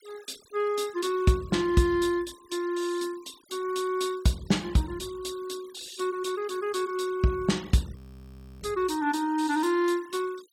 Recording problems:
noise reduction artefacts; signal-to-artefact ratio 21 dB
audio freezing; at 8 s for 0.5 s

